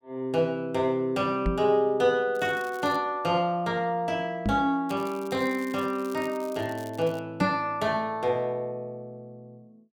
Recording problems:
knock on the microphone; at 1.5 s, at 4.5 s and at 7.5 s; peak +4 dB vs average level
crackling; at 2.5 s and from 5 to 7 s; loose cable, SNR 23 dB

